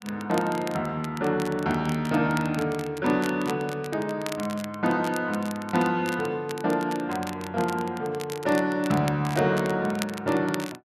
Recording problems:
crackling; vinyl, SNR 15 dB

